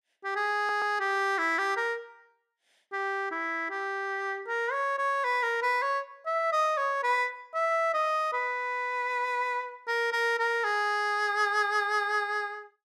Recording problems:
stutter; at 0.5 s

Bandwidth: 14.5 kHz